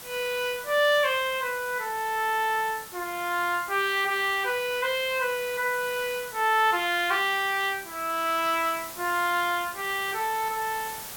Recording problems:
background hiss; slope -1 dB per octave, SNR 14 dB

